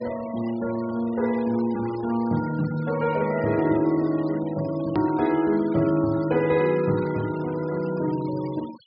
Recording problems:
treble cut off; nothing above 5.5 kHz
denoising artefacts; signal-to-artefact ratio 19 dB
click at an edit; at 5 s

